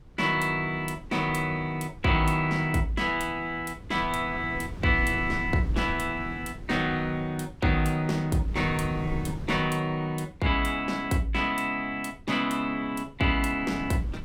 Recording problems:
wind on the microphone; below 180 Hz, SNR 14 dB

